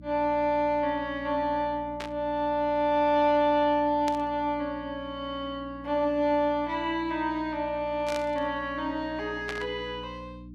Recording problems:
hum; 60 Hz, harmonics up to 300 Hz, SNR 18 dB
burst of static; 4 times, first at 2 s; peak -4 dB vs average level

